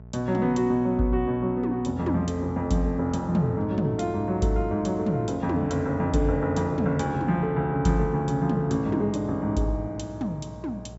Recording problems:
low-pass filter; nothing above 8 kHz
electrical hum; 60 Hz, harmonics up to 900 Hz, SNR 18 dB

